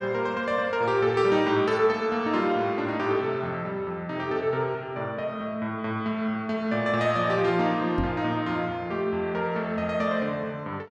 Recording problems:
microphone bump; at 8 s; peak 0 dB vs average level

